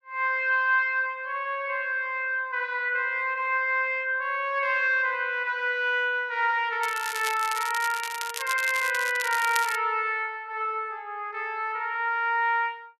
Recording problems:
crackle; from 7 to 10 s; loose cable, SNR 9 dB

